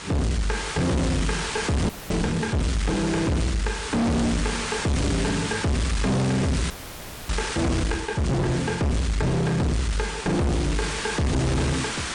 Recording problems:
lossy codec; MP3, log-spectral distance 7 dB
distorted audio; hard clipping, uneven, signal-to-distortion ratio 5 dB
hiss; slope -1 dB per octave, SNR 6 dB
frozen audio; at 2 s and at 6.5 s for 0.5 s

